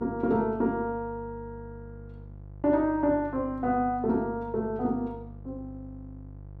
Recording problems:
mains hum; 50 Hz, harmonics up to 700 Hz, SNR 17 dB

